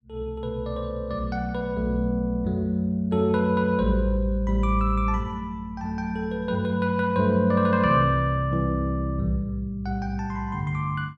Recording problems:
none

